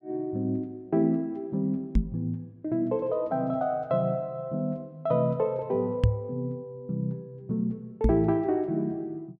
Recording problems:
microphone thump; at 2 s, at 6 s and at 8 s; peak +9 dB vs average level

